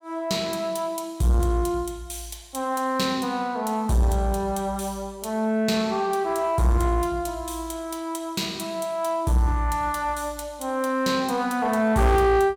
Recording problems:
distorted audio; soft clipping, signal-to-distortion ratio 10 dB

